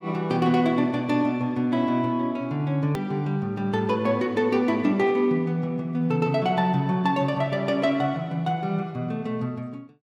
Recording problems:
click at an edit; at 3 s

